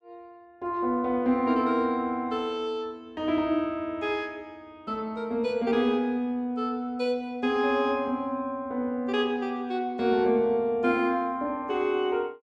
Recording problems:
none

